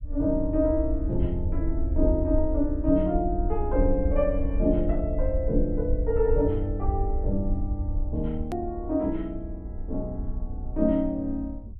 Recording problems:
treble cut off; nothing above 4 kHz
low-frequency rumble; below 64 Hz, SNR 4 dB
hard cut with a click; at 8.5 s

